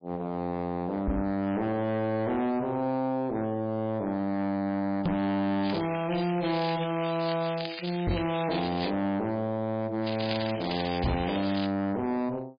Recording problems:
lossy compression; MP3, log-spectral distance 7 dB
distortion; hard clipping, uneven, signal-to-distortion ratio 7 dB
microphone thump; 4 times, first at 1 s; peak +6 dB vs average level
crackling; from 5.5 to 9 s and from 10 to 12 s; loose cable, SNR 8 dB

